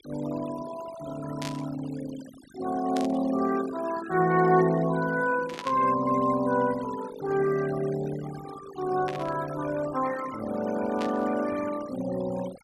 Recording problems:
noise reduction artefacts; signal-to-artefact ratio 14 dB
burst of static; 5 times, first at 1.5 s; peak -5 dB vs average level

